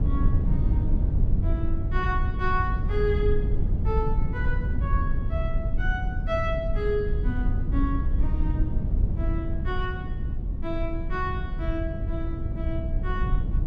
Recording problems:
rumble; below 90 Hz, SNR -5 dB

